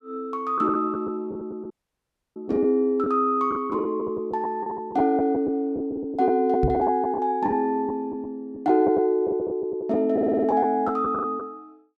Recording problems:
lost packets; 7% of the sound replaced, filled with the last packet
audio cutting out; at 1.5 s for 0.5 s
microphone bump; at 6.5 s; peak +2 dB vs average level
stutter; at 10 s

